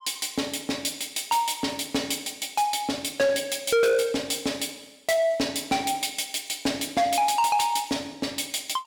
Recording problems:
distorted audio; soft clipping, signal-to-distortion ratio 7 dB

